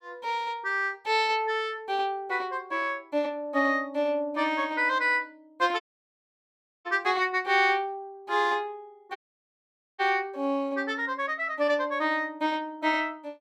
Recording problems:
audio cutting out; at 6 s for 1 s and at 9 s for 1 s

